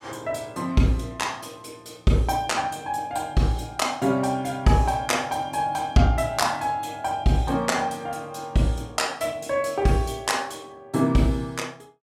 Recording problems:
none

